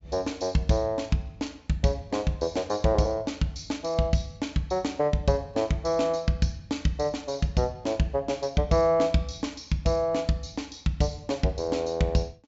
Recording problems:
treble missing; nothing above 8 kHz

